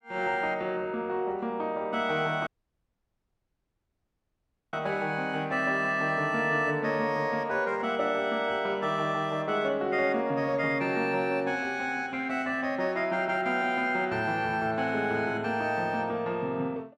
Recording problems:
audio cutting out; at 2.5 s for 2.5 s

